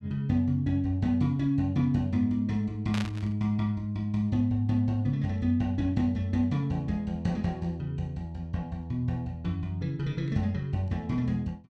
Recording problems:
static burst; at 3 s; peak -4 dB vs average level

